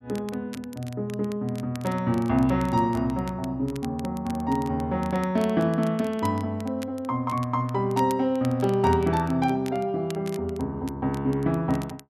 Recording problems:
crackling; vinyl, SNR 21 dB

